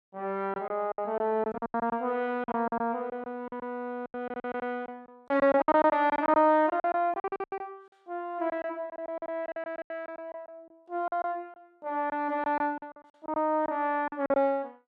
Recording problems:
packet loss; 16% of the sound replaced, filled with silence

